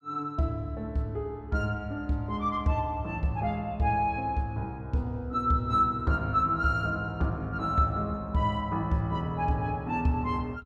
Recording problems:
none

